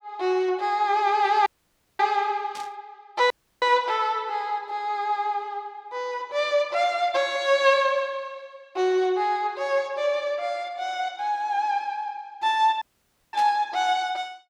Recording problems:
audio cutting out; at 1.5 s for 0.5 s, at 3.5 s and at 13 s for 0.5 s
burst of static; at 2.5 s and at 13 s; peak -10 dB vs average level

